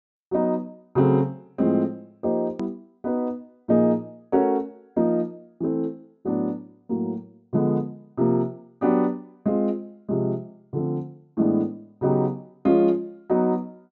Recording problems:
treble cut off; nothing above 8 kHz
click at an edit; at 2.5 s

